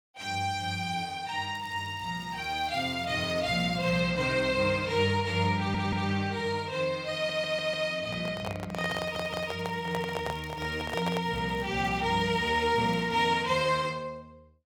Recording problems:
crackling; from 1.5 to 4 s and from 9 to 13 s; loose cable, SNR 27 dB
stutter; at 5.5 s, at 7 s and at 9 s
handling noise; from 8 to 11 s; peak -2 dB vs average level

